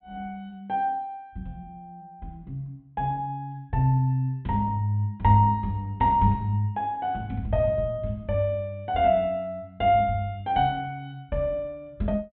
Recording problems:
treble missing; nothing above 4 kHz

